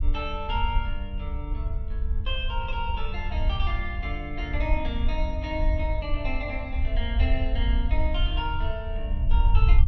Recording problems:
low-frequency rumble; below 64 Hz, SNR -4 dB

